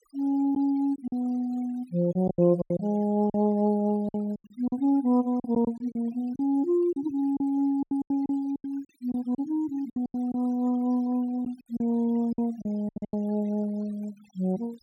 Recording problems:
noise reduction artefacts; signal-to-artefact ratio 27 dB
packet loss; 11% of the sound replaced, filled with silence

